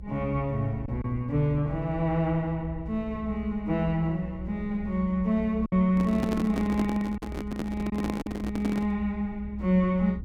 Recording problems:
rumble; below 76 Hz, strongest tone 64 Hz, SNR 13 dB
lost packets; 2% of the sound replaced, filled with silence
handling noise; from 6 to 9 s; peak +1 dB vs average level

